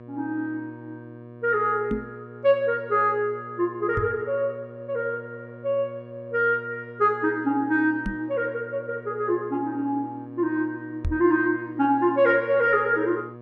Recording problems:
hum; 60 Hz, harmonics up to 1.2 kHz, SNR 18 dB
microphone thump; 4 times, first at 2 s; peak 0 dB vs average level

